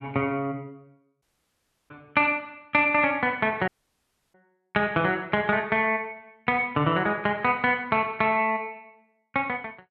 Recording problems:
dropout; at 1 s for 0.5 s and at 3.5 s for 0.5 s

